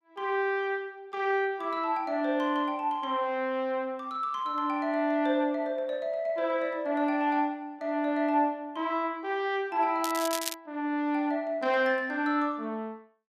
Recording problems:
crackling; at 10 s; loose cable, SNR 7 dB

